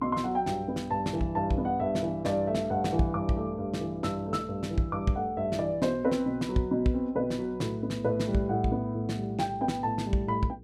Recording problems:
hum; 60 Hz, harmonics up to 480 Hz, SNR 21 dB

